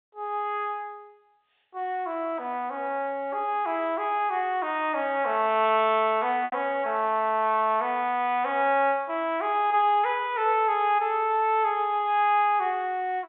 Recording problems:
phone line; 240 Hz to 3.7 kHz, G.711
lost packets; 0.6% of the sound replaced, filled with repeated pitch periods

